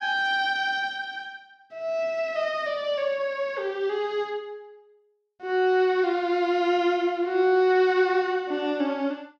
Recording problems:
none

